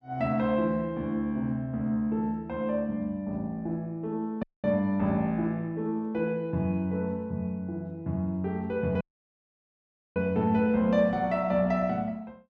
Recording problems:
audio cutting out; at 4.5 s and at 9 s for 1 s

